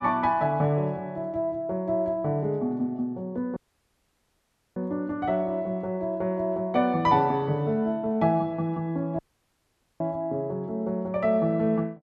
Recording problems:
audio cutting out; at 3.5 s for 1 s and at 9 s for 1 s

